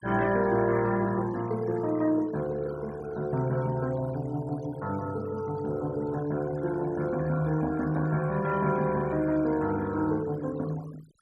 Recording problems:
denoising artefacts; signal-to-artefact ratio 19 dB

